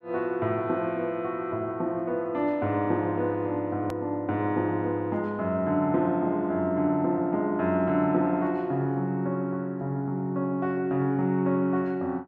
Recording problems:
edit click; at 4 s

